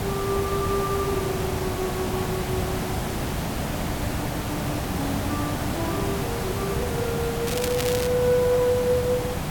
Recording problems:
background hiss; slope -5 dB per octave, SNR 1 dB
crackling; at 7.5 s; loose cable, SNR 5 dB

